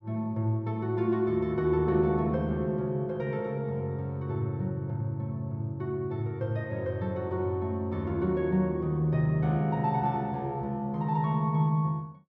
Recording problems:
none

